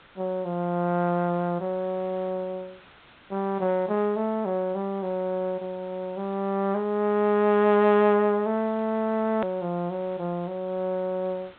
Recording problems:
treble cut off; nothing above 4 kHz
hiss; SNR 26 dB
edit click; at 9.5 s

